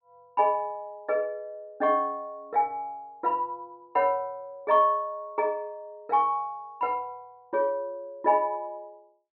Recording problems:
treble cut off; nothing above 5.5 kHz

